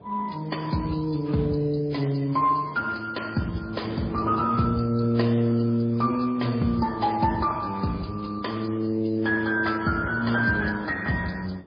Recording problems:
lossy codec; Speex, then MP3, log-spectral distance 5 dB, nothing above 5 kHz
wind noise; below 590 Hz, SNR 21 dB

